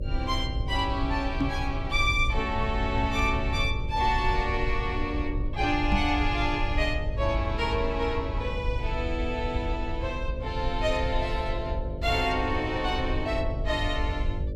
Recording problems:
hum; 50 Hz, harmonics up to 600 Hz, SNR 13 dB
rumble; below 80 Hz, SNR 4 dB
microphone thump; at 1.5 s and at 6 s; peak +6 dB vs average level

